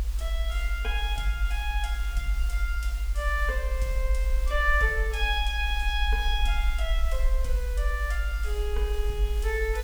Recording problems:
hiss; slope -1 dB per octave, SNR 16 dB
low-frequency rumble; below 56 Hz, SNR -1 dB

